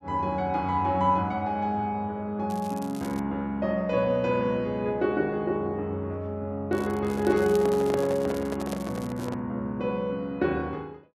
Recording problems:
crackle; at 2.5 s and from 6.5 to 9.5 s; loose cable, SNR 20 dB
handling noise; from 7 to 9.5 s; peak 0 dB vs average level

